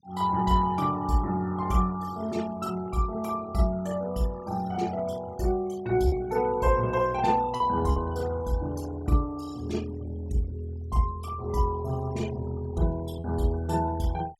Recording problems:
noise reduction artefacts; signal-to-artefact ratio 21 dB
packet loss; 1.1% of the sound replaced, filled with repeated pitch periods

